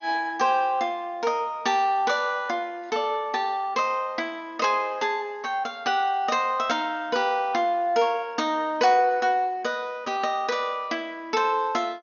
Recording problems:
lossy compression; MP2, log-spectral distance 2 dB, nothing above 6.5 kHz

